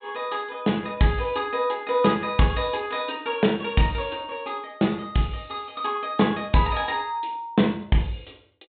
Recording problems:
treble missing; nothing above 4 kHz

